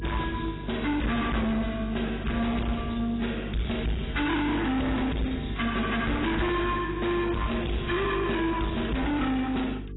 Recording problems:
codec artefacts; AAC, log-spectral distance 6 dB, nothing above 3.8 kHz
distortion; hard clipping, uneven, signal-to-distortion ratio 6 dB
mains hum; 50 Hz, harmonics up to 450 Hz, SNR 10 dB

